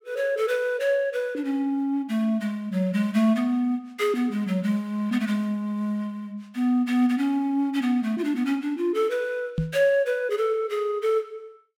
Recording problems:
knock on the microphone; at 9.5 s; peak +3 dB vs average level

